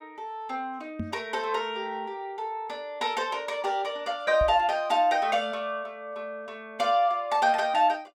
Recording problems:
microphone thump; at 1 s and at 4.5 s; peak -1 dB vs average level

